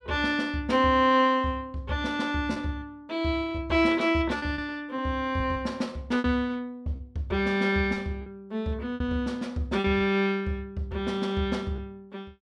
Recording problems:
packet loss; 5% of the sound replaced, filled with repeated pitch periods

